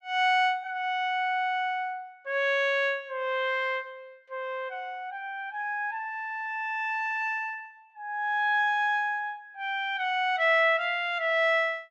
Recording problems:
none

